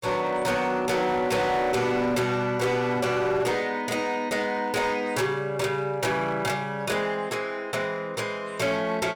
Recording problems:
distortion; hard clipping, uneven, signal-to-distortion ratio 11 dB

